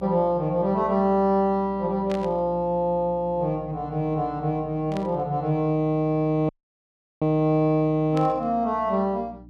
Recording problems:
electrical hum; 60 Hz, harmonics up to 300 Hz, SNR 21 dB
burst of static; at 2 s, at 5 s and at 8 s; peak -10 dB vs average level
audio cutting out; at 6.5 s for 0.5 s

